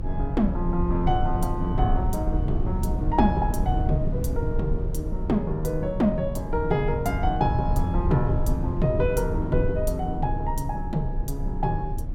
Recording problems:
rumble; below 100 Hz, SNR 2 dB

